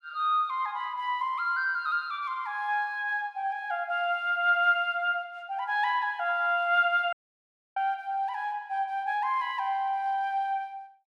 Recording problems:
audio cutting out; at 7 s for 0.5 s

